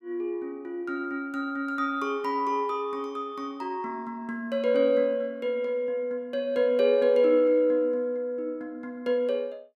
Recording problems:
none

